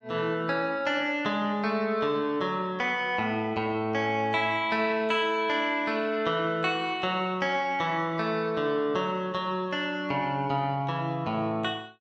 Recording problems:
none

